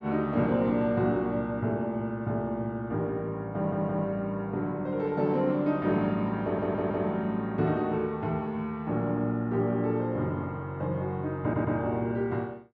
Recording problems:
audio stuttering; at 3.5 s, at 6.5 s and at 11 s

